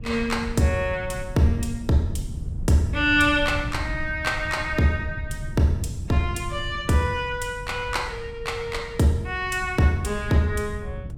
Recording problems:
wind noise; below 110 Hz, SNR 10 dB

